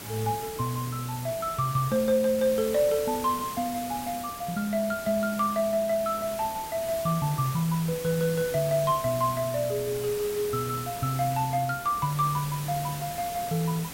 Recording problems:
background hiss; slope -2 dB per octave, SNR 10 dB

